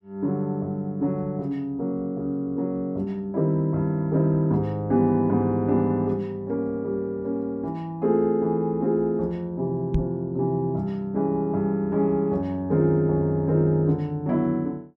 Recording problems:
microphone bump; at 10 s; peak +4 dB vs average level

